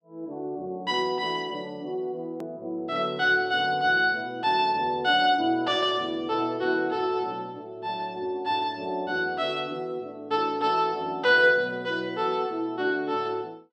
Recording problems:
edit click; at 2.5 s

